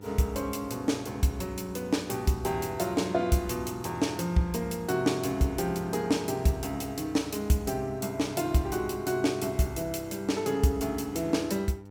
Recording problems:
hum; 50 Hz, harmonics up to 1.4 kHz, SNR 18 dB

